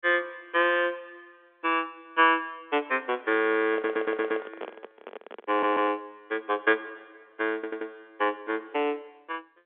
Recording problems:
phone line; 260 Hz to 3.5 kHz, G.711
microphone handling noise; from 3.5 to 6 s; peak -6 dB vs average level
audio stuttering; at 3.5 s, at 5.5 s and at 7.5 s

